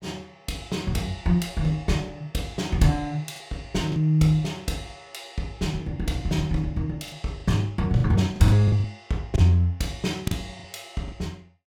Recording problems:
packet loss; 5% of the sound replaced, filled with the last packet

